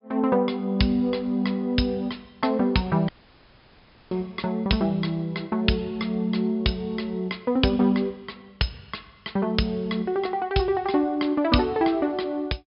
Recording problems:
low-pass filter; nothing above 5.5 kHz
audio cutting out; at 3 s for 1 s

